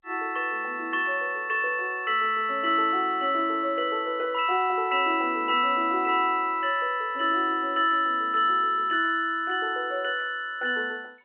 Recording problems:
phone line; 280 Hz to 3.1 kHz, G.711

